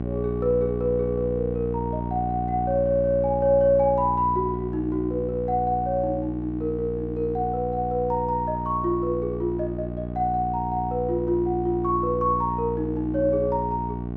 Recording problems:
mains hum; 60 Hz, harmonics up to 1.1 kHz, SNR 6 dB

